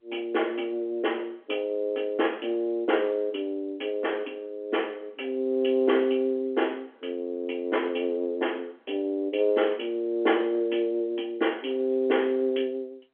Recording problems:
phone line; 240 Hz to 3.4 kHz, G.711

